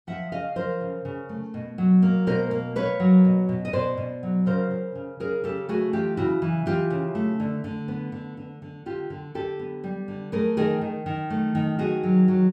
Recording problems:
none

